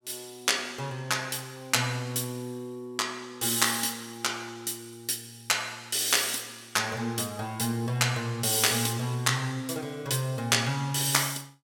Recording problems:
none

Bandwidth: 17.5 kHz